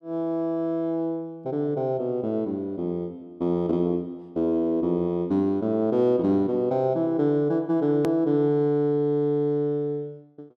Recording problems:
edit click; at 8 s

